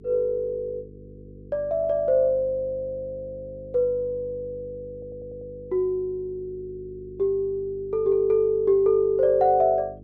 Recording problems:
hum; 50 Hz, harmonics up to 450 Hz, SNR 21 dB
audio stuttering; at 5 s

